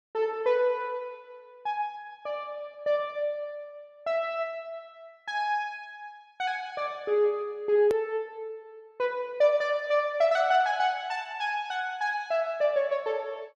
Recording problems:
click at an edit; at 8 s

